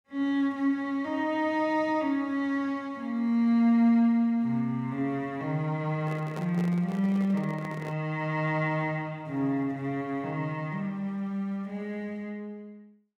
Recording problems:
microphone handling noise; from 6 to 8 s; peak -7 dB vs average level

